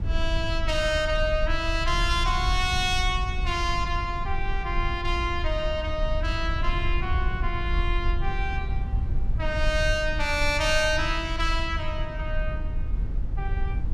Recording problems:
rumble; below 66 Hz, SNR 3 dB

